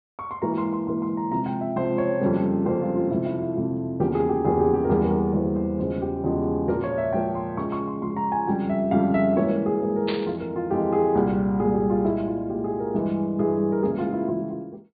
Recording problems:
treble missing; nothing above 4.6 kHz
burst of static; at 10 s; peak -3 dB vs average level

